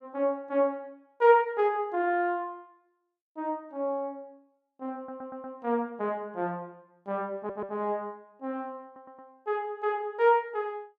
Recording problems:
audio stuttering; at 5 s, at 7.5 s and at 9 s

